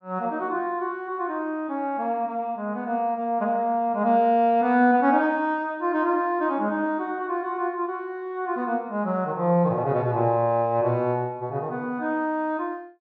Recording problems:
none

